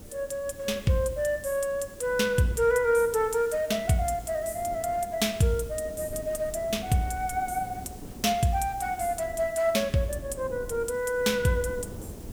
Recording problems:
hiss; SNR 22 dB
wind noise; below 320 Hz, SNR 17 dB

